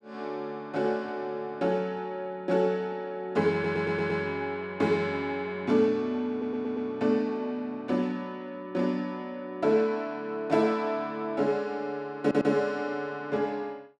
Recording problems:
audio stuttering; at 3.5 s, at 6.5 s and at 12 s

